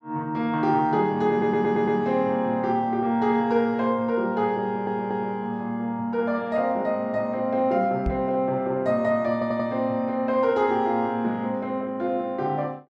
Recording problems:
audio stuttering; at 1.5 s, at 4.5 s and at 9.5 s
microphone thump; at 8 s; peak 0 dB vs average level

